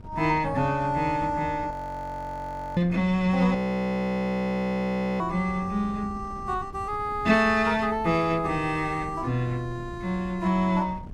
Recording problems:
wind on the microphone; below 200 Hz, SNR 17 dB
frozen audio; at 1.5 s for 1 s and at 3.5 s for 1.5 s

